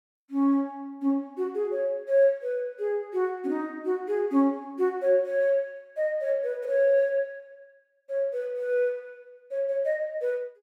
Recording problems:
none

